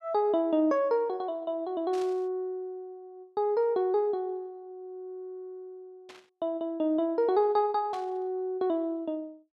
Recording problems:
burst of static; at 2 s, at 6 s and at 8 s; peak -14 dB vs average level

